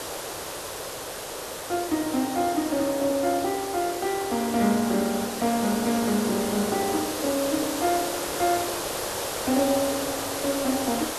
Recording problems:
hiss; SNR 5 dB

